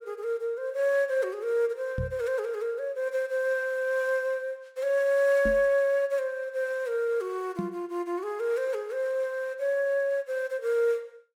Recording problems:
microphone thump; at 2 s, at 5.5 s and at 7.5 s; peak -1 dB vs average level

